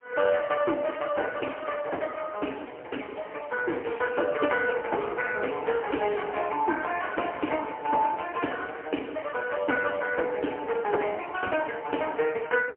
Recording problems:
phone line; 280 Hz to 2.9 kHz, AMR-NB, then MP3

